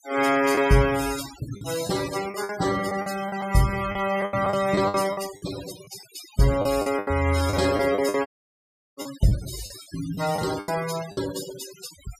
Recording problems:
denoising artefacts; signal-to-artefact ratio 12 dB
packet loss; 11% of the sound replaced, filled with the last packet
dropout; at 8.5 s for 0.5 s

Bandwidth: 15 kHz